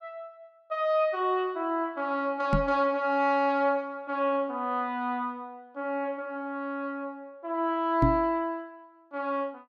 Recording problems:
microphone bump; at 2.5 s and at 8 s; peak +7 dB vs average level

